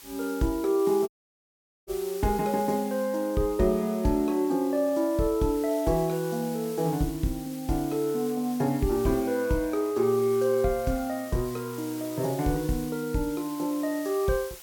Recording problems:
background hiss; slope +1 dB per octave, SNR 16 dB
dropout; at 1 s for 1 s

